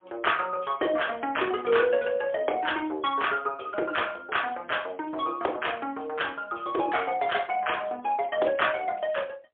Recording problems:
telephone audio; 280 Hz to 3.4 kHz, AMR-NB, then MP3

